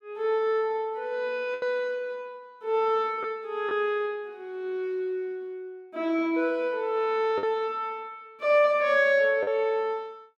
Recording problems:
lost packets; 2% of the sound replaced, filled with the last packet

